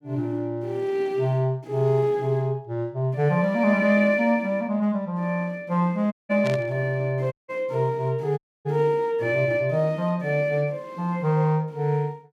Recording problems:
audio cutting out; at 6 s, at 7.5 s and at 8.5 s
static burst; at 6.5 s; peak -7 dB vs average level

